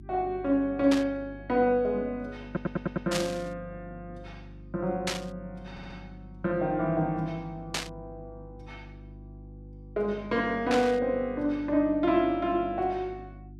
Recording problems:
electrical hum; 50 Hz, harmonics up to 350 Hz, SNR 19 dB
burst of static; 5 times, first at 1 s; peak +2 dB vs average level
audio stuttering; at 2.5 s and at 5.5 s

